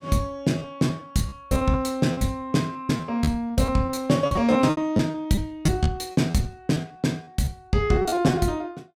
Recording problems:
lost packets; 15% of the sound replaced, filled with repeated pitch periods

